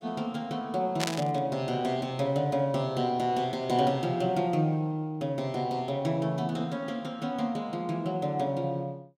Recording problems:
burst of static; at 1 s; peak +3 dB vs average level

